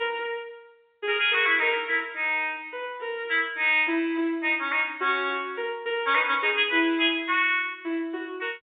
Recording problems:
telephone audio; 280 Hz to 3.6 kHz, G.711

